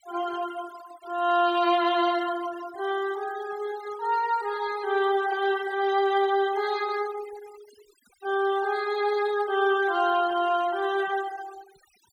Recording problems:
noise reduction artefacts; signal-to-artefact ratio 18 dB

